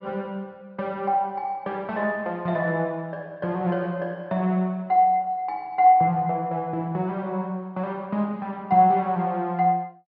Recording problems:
low-pass filter; nothing above 5.4 kHz

